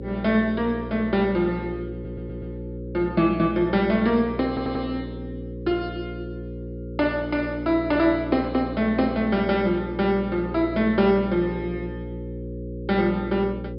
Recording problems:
treble missing; nothing above 5.5 kHz
electrical hum; 60 Hz, harmonics up to 540 Hz, SNR 11 dB
audio stuttering; at 2 s and at 4.5 s

